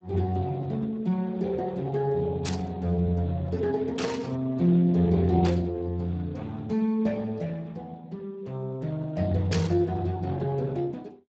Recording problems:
lossy compression; Speex, log-spectral distance 3 dB, nothing above 16 kHz
burst of static; 4 times, first at 2.5 s; peak -1 dB vs average level

